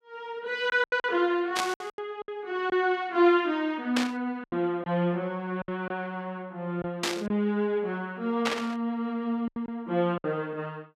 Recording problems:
packet loss; 7% of the sound replaced, filled with silence
static burst; 4 times, first at 1.5 s; peak +4 dB vs average level

